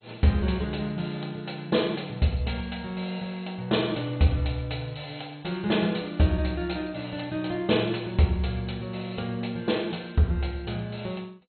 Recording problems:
lossy compression; MP2, log-spectral distance 7 dB, nothing above 4.2 kHz

